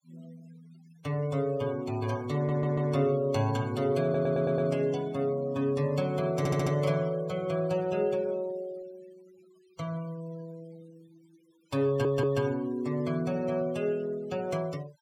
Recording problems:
noise reduction artefacts; signal-to-artefact ratio 22 dB
stutter; 4 times, first at 2.5 s

